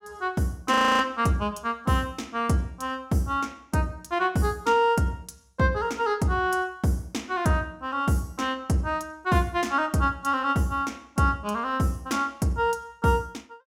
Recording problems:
frozen audio; at 0.5 s

